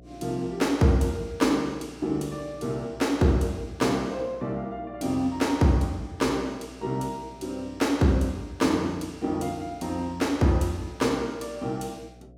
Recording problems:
hum; 60 Hz, harmonics up to 720 Hz, SNR 23 dB

